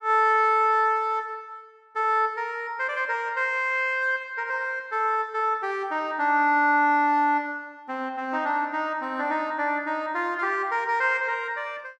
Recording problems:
none

